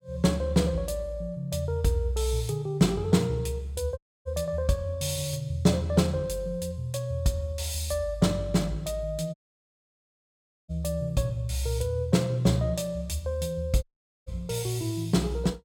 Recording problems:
dropout; at 4 s, at 9.5 s for 1.5 s and at 14 s

